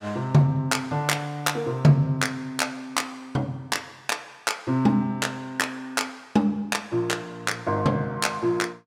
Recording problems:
none

